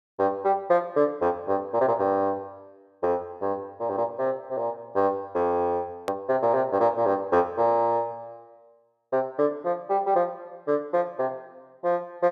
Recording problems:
edit click; at 6 s

